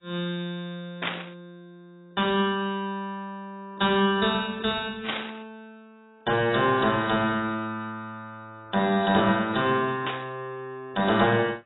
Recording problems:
codec artefacts; AAC, log-spectral distance 5 dB, nothing above 3.5 kHz
burst of static; at 1 s, at 5 s and at 10 s; peak +1 dB vs average level

